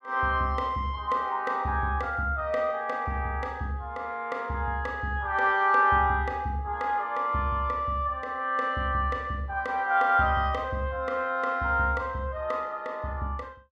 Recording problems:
none

